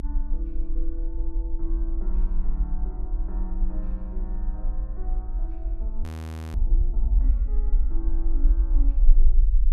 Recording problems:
low-frequency rumble; below 44 Hz, strongest tone 26 Hz, SNR -15 dB
audio freezing; at 6 s for 0.5 s

